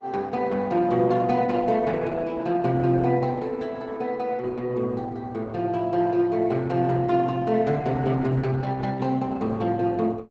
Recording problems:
lossy codec; Opus, log-spectral distance 3 dB, nothing above 7.8 kHz

